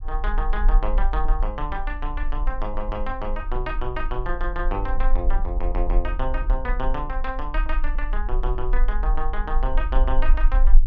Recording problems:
low-frequency rumble; below 38 Hz, strongest tone 20 Hz, SNR -3 dB

